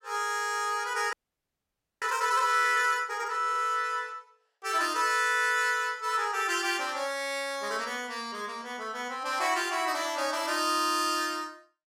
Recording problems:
frozen audio; at 1 s for 1 s

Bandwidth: 16.5 kHz